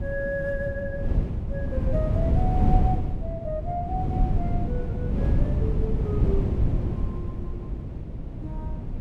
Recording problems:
wind on the microphone; below 150 Hz, SNR -6 dB

